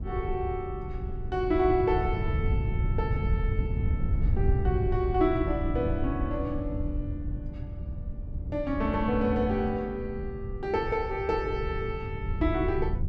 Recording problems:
low-frequency rumble; below 110 Hz, SNR 2 dB

